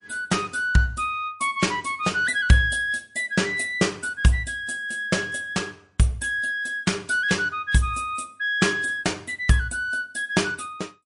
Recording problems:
lossy compression; MP3, log-spectral distance 3 dB, nothing above 10.4 kHz

